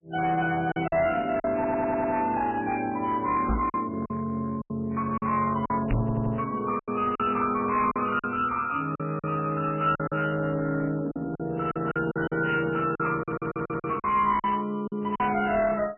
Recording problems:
lossy codec; MP3, log-spectral distance 3 dB, nothing above 2.5 kHz
distortion; hard clipping, uneven, signal-to-distortion ratio 10 dB
packet loss; 8% of the sound replaced, filled with silence
audio stuttering; at 1.5 s, at 6 s and at 13 s
knock on the microphone; at 3.5 s and at 6 s; peak +4 dB vs average level

